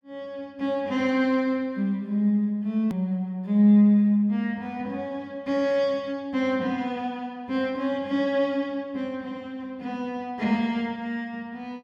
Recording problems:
hard cut with a click; at 3 s

